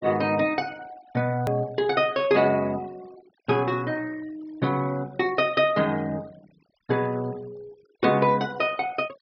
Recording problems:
treble cut off; nothing above 5.5 kHz
noise reduction artefacts; signal-to-artefact ratio 25 dB
click at an edit; at 1.5 s

